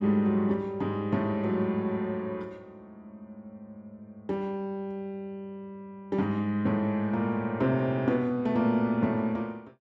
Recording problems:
none

